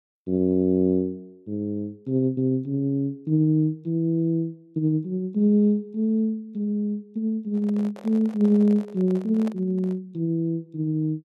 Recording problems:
handling noise; from 7.5 to 10 s; peak -10 dB vs average level

